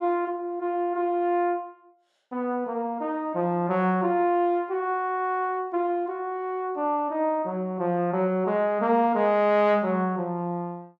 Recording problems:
none

